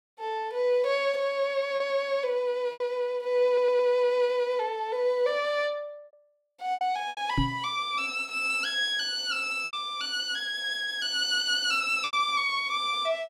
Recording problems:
packet loss; 4% of the sound replaced, filled with repeated pitch periods
audio stuttering; at 3.5 s
microphone bump; at 7.5 s; peak +3 dB vs average level

